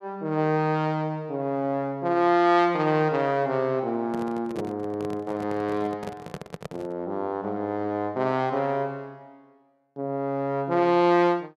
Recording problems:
handling noise; from 4 to 7 s; peak -6 dB vs average level

